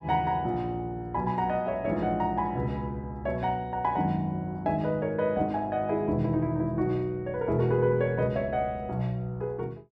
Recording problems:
none

